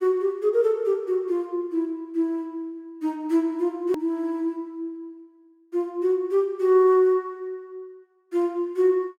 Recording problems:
click at an edit; at 4 s

